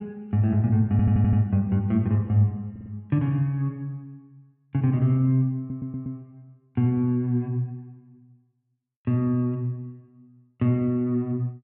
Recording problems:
stutter; at 1 s, at 2.5 s and at 5.5 s

